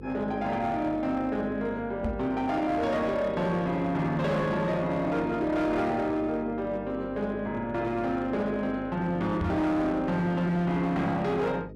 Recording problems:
distortion; hard clipping, signal-to-distortion ratio 12 dB
hum; 50 Hz, harmonics up to 500 Hz, SNR 16 dB
microphone bump; at 2 s and at 9.5 s; peak +2 dB vs average level

